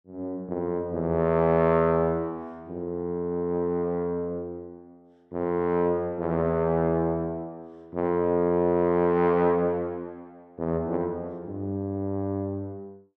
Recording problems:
none

